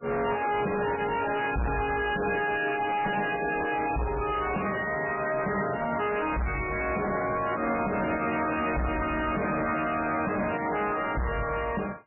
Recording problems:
lossy compression; MP3, log-spectral distance 8 dB, nothing above 2.5 kHz
distorted audio; soft clipping, signal-to-distortion ratio 5 dB

